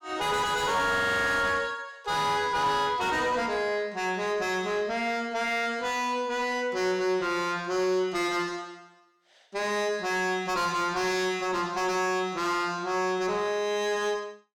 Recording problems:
distorted audio; soft clipping, signal-to-distortion ratio 4 dB

